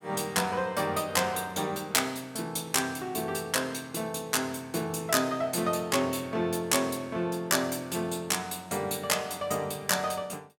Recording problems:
none

